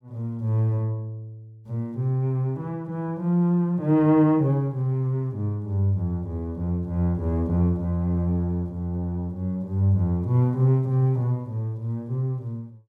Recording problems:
none

